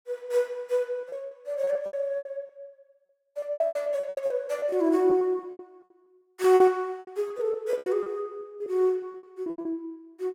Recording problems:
lost packets; 17% of the sound replaced, filled with repeated pitch periods

